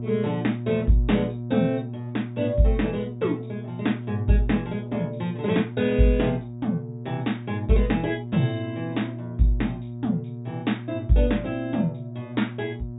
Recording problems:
treble missing; nothing above 4 kHz
hum; 60 Hz, harmonics up to 720 Hz, SNR 9 dB

